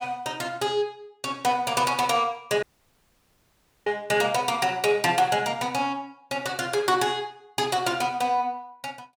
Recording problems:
dropout; at 2.5 s for 1 s

